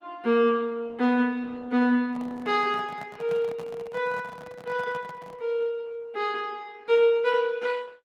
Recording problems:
codec artefacts; Opus, log-spectral distance 2 dB
microphone handling noise; from 2 to 5.5 s; peak -11 dB vs average level

